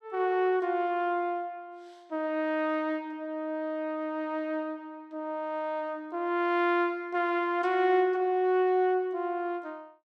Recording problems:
none

